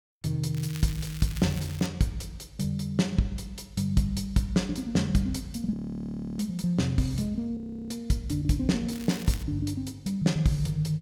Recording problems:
crackle; from 0.5 to 2 s and at 9 s; loose cable, SNR 15 dB
frozen audio; at 5.5 s for 0.5 s and at 7.5 s

